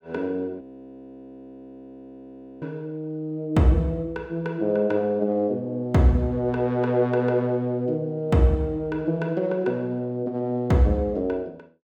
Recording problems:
frozen audio; at 0.5 s for 2 s

